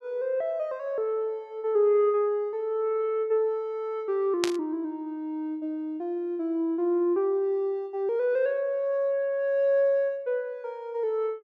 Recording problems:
burst of static; at 4.5 s; peak +3 dB vs average level

